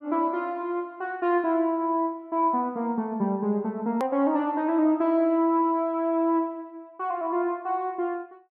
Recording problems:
edit click; at 4 s

